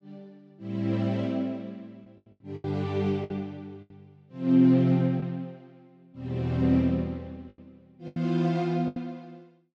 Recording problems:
lost packets; 6% of the sound replaced, filled with the last packet

